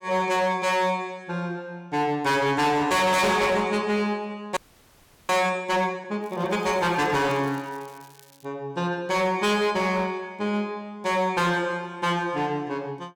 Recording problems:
distortion; hard clipping, signal-to-distortion ratio 7 dB
audio freezing; at 4.5 s for 0.5 s
crackling; from 6 to 8.5 s; loose cable, SNR 27 dB

